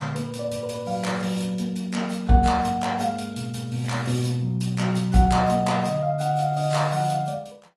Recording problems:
lossy compression; AAC, log-spectral distance 3 dB, nothing above 11.6 kHz

